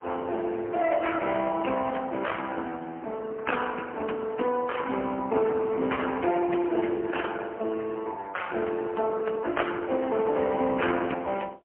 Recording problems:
phone line; 220 Hz to 3.1 kHz, AMR-NB, then MP3

